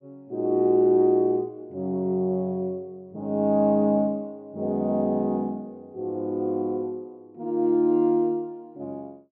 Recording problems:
none

